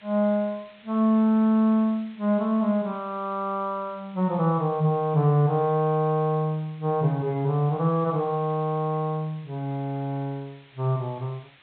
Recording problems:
low-pass filter; nothing above 4 kHz
hiss; SNR 28 dB

